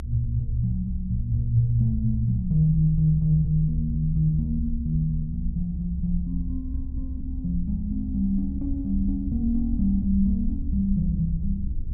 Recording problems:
rumble; below 68 Hz, SNR 6 dB

